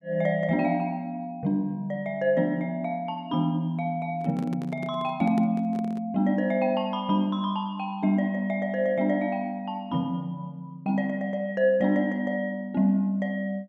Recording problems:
microphone handling noise; from 4 to 6 s; peak -5 dB vs average level

